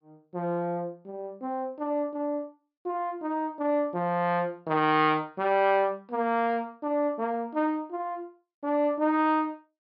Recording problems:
treble missing; nothing above 5.5 kHz

